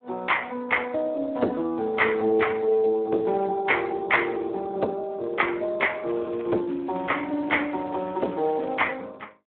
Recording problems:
phone line; 240 Hz to 3.3 kHz, Speex
crackling; from 6 to 9 s; loose cable, SNR 24 dB

